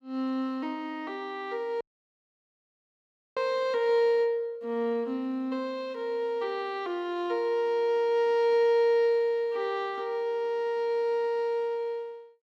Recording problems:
dropout; at 2 s for 1.5 s

